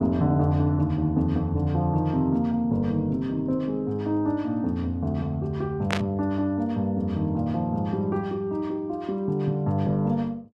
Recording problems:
burst of static; at 6 s; peak +3 dB vs average level

